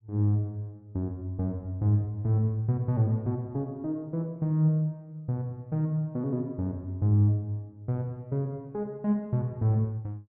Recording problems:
none

